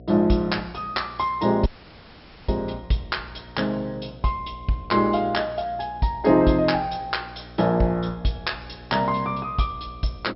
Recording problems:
low-pass filter; nothing above 5.5 kHz
hum; 60 Hz, harmonics up to 720 Hz, SNR 20 dB
dropout; at 1.5 s for 1 s

